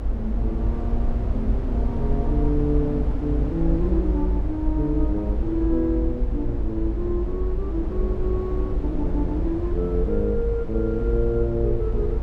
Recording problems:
rumble; below 66 Hz, SNR 0 dB

